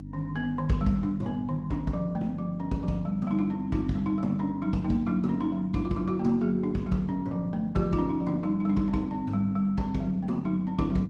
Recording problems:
lossy codec; Opus, log-spectral distance 2 dB, nothing above 12 kHz
electrical hum; 50 Hz, harmonics up to 300 Hz, SNR 12 dB

